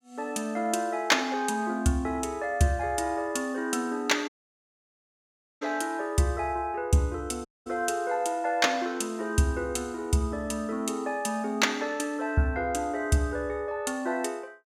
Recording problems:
dropout; at 4.5 s for 1.5 s and at 7.5 s

